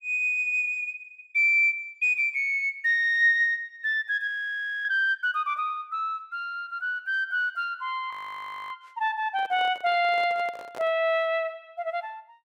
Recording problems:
frozen audio; at 4.5 s for 0.5 s and at 8 s for 0.5 s
handling noise; from 9.5 to 11 s; peak -11 dB vs average level

